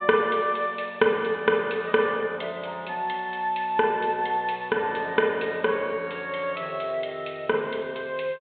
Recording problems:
treble missing; nothing above 4 kHz

